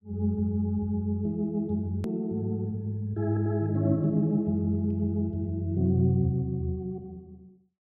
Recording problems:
hard cut with a click; at 2 s

